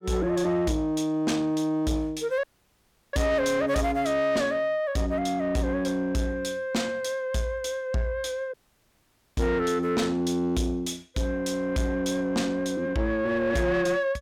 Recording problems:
distortion; soft clipping, signal-to-distortion ratio 11 dB
audio cutting out; at 2.5 s for 0.5 s and at 8.5 s for 1 s

